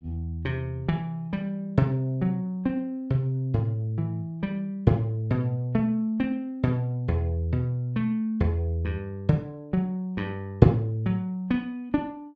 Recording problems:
none

